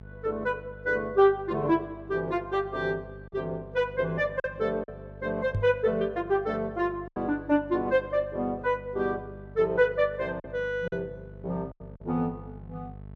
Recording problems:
mains hum; 50 Hz, harmonics up to 900 Hz, SNR 18 dB
lost packets; 3% of the sound replaced, filled with silence
microphone thump; at 5.5 s; peak +2 dB vs average level

